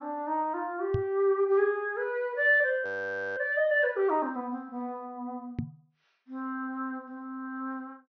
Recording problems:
low-pass filter; nothing above 6.3 kHz
microphone thump; at 1 s and at 5.5 s; peak +2 dB vs average level
frozen audio; at 3 s for 0.5 s

